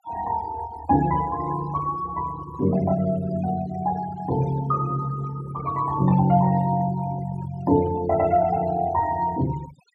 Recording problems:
denoising artefacts; signal-to-artefact ratio 17 dB

